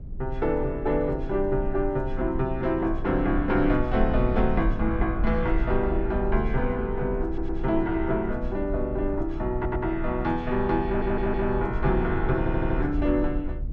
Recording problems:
low-frequency rumble; below 58 Hz, SNR 6 dB
audio stuttering; 4 times, first at 7.5 s

